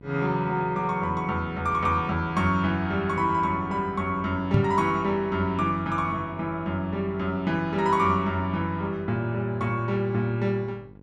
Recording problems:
hum; 50 Hz, harmonics up to 1.1 kHz, SNR 22 dB
microphone thump; at 4.5 s; peak +7 dB vs average level

